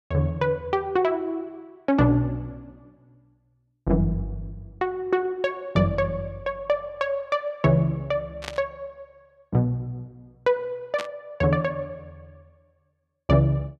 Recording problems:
burst of static; at 8.5 s and at 11 s; peak -4 dB vs average level

